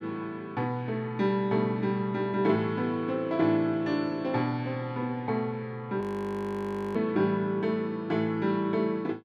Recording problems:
frozen audio; at 6 s for 1 s

